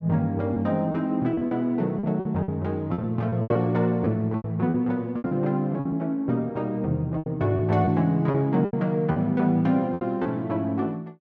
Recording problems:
packet loss; 10% of the sound replaced, filled with repeated pitch periods

